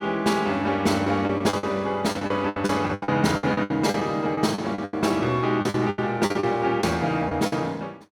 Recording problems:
lost packets; 14% of the sound replaced, filled with the last packet

